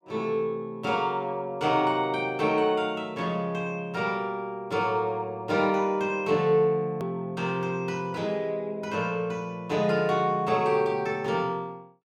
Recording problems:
edit click; at 7 s

